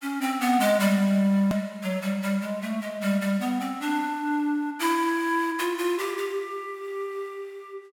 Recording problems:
hard cut with a click; at 1.5 s

